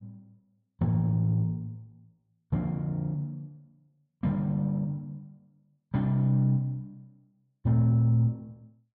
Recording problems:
none

